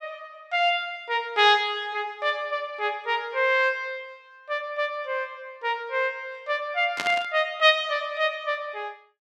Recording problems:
burst of static; at 7 s; peak 0 dB vs average level

